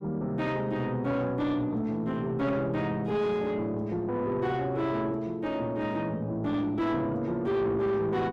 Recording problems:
distortion; soft clipping, signal-to-distortion ratio 10 dB

